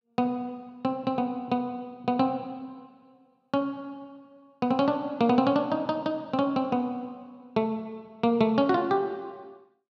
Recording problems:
none

